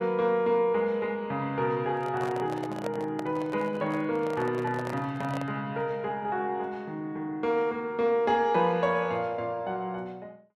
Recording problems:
microphone handling noise; from 2 to 5.5 s; peak -3 dB vs average level

